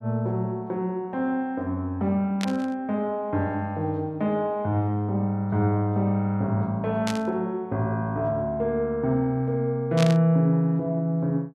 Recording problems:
static burst; at 2.5 s, at 7 s and at 10 s; peak -1 dB vs average level

